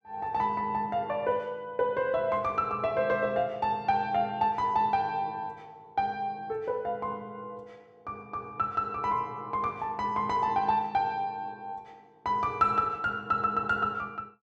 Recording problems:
none

